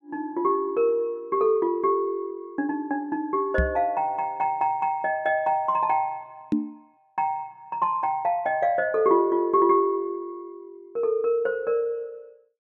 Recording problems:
microphone thump; at 3.5 s and at 6.5 s; peak +5 dB vs average level

